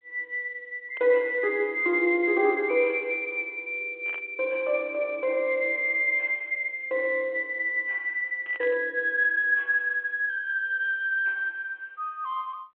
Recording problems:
phone line; 260 Hz to 3.3 kHz, G.726
static burst; at 1 s, at 4 s and at 8.5 s; peak -14 dB vs average level

